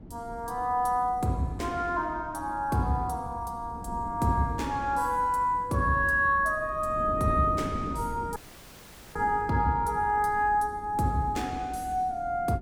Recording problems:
wind noise; below 280 Hz, SNR 15 dB
dropout; at 8.5 s for 1 s

